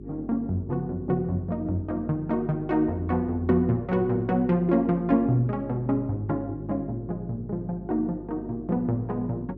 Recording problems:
hum; 50 Hz, harmonics up to 400 Hz, SNR 15 dB

